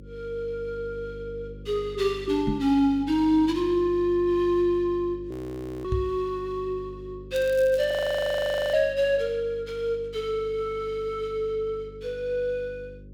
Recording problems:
hum; 50 Hz, harmonics up to 550 Hz, SNR 18 dB
microphone bump; at 2.5 s and at 6 s; peak +2 dB vs average level
frozen audio; at 5.5 s for 0.5 s and at 8 s for 1 s
crackling; at 7.5 s; loose cable, SNR 22 dB

